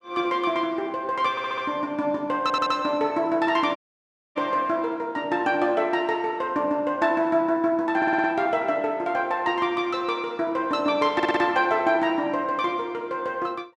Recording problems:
stutter; 4 times, first at 1.5 s
dropout; at 4 s for 0.5 s

